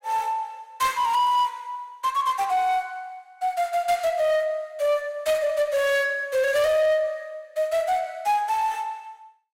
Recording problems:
distortion; soft clipping, signal-to-distortion ratio 11 dB

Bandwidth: 16 kHz